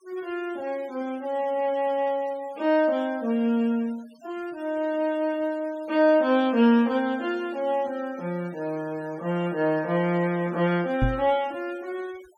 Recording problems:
denoising artefacts; signal-to-artefact ratio 24 dB
microphone bump; at 11 s; peak +4 dB vs average level

